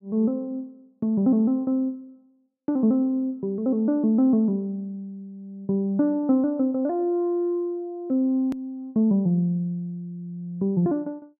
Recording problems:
edit click; at 8.5 s

